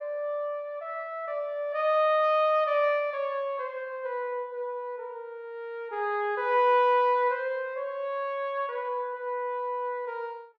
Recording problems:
none

